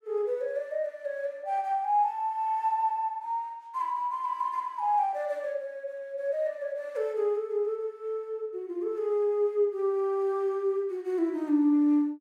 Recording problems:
none

